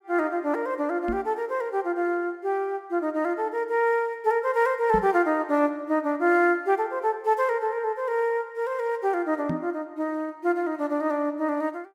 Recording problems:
microphone thump; at 1 s, at 5 s and at 9.5 s; peak -1 dB vs average level

